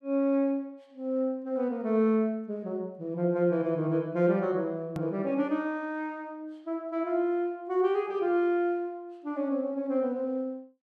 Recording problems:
click at an edit; at 5 s

